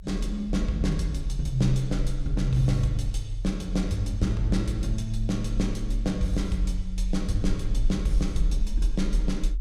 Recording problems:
rumble; below 42 Hz, strongest tone 40 Hz, SNR 4 dB

